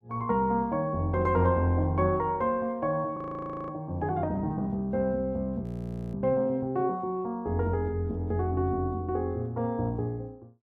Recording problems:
frozen audio; at 3 s for 0.5 s and at 5.5 s for 0.5 s

